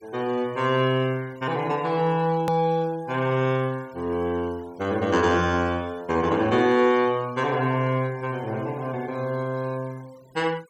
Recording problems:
denoising artefacts; signal-to-artefact ratio 24 dB
edit click; at 2.5 s

